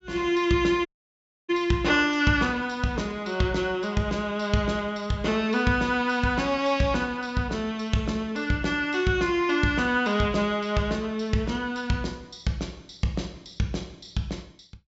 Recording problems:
low-pass filter; nothing above 8 kHz
audio cutting out; at 1 s for 0.5 s

